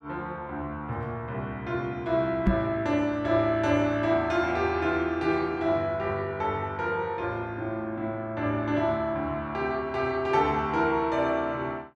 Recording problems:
microphone thump; at 2.5 s; peak +8 dB vs average level

